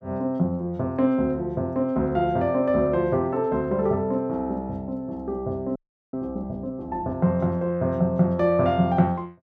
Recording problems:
frozen audio; at 6 s

